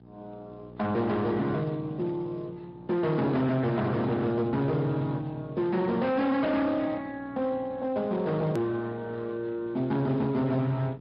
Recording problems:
treble cut off; nothing above 5.5 kHz
lossy compression; Speex, log-spectral distance 2 dB
distorted audio; hard clipping, signal-to-distortion ratio 8 dB
hum; 60 Hz, harmonics up to 1.2 kHz, SNR 21 dB
edit click; at 8.5 s

